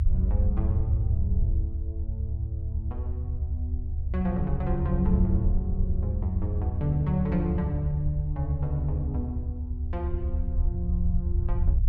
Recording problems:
rumble; below 76 Hz, SNR -2 dB

